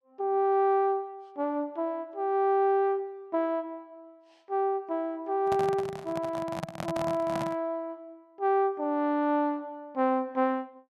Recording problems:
handling noise; from 5.5 to 7.5 s; peak -2 dB vs average level

